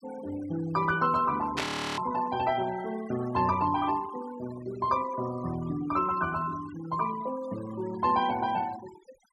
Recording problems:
denoising artefacts; signal-to-artefact ratio 16 dB
static burst; at 1.5 s; peak +3 dB vs average level
frozen audio; at 1.5 s

